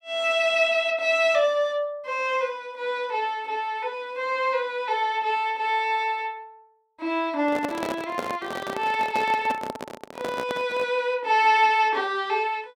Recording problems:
microphone handling noise; from 7.5 to 11 s; peak -2 dB vs average level

